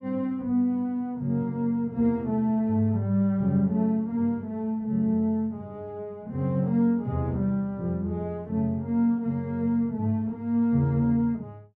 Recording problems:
none

